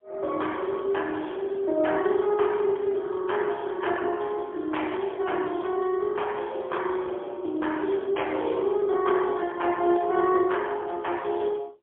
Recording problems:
phone line; 280 Hz to 3.3 kHz, AMR-NB, then MP3

